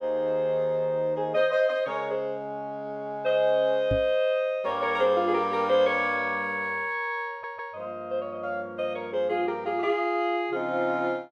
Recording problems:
microphone bump; at 4 s; peak +1 dB vs average level
stutter; at 7.5 s

